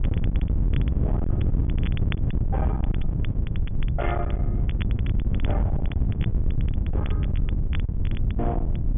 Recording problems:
low-pass filter; nothing above 3.5 kHz
distortion; hard clipping, signal-to-distortion ratio 7 dB
low-frequency rumble; below 80 Hz, SNR 5 dB
wind noise; below 120 Hz, SNR -9 dB
crackle; vinyl, SNR 11 dB

